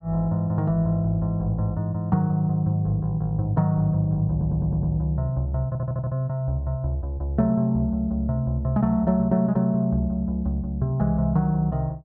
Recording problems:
stutter; at 4.5 s and at 5.5 s

